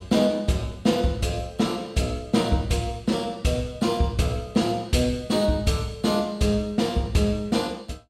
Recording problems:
none

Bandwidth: 16.5 kHz